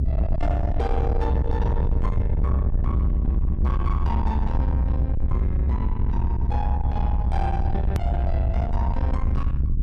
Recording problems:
distortion; soft clipping, signal-to-distortion ratio 8 dB
low-frequency rumble; below 88 Hz, SNR -6 dB
hard cut with a click; at 8 s

